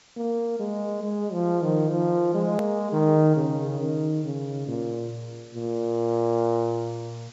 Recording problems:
treble cut off; nothing above 8 kHz
background hiss; slope 0 dB per octave, SNR 27 dB
click at an edit; at 2.5 s

